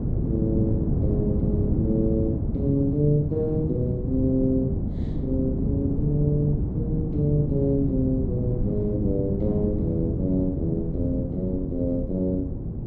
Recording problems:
wind noise; below 230 Hz, SNR 1 dB

